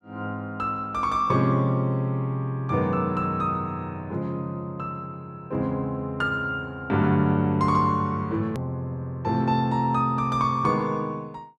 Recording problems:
hard cut with a click; at 8.5 s

